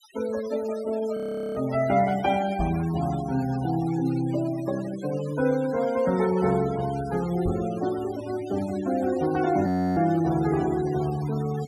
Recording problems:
denoising artefacts; signal-to-artefact ratio 16 dB
frozen audio; at 1 s and at 9.5 s
microphone bump; at 2.5 s and at 7.5 s; peak -2 dB vs average level

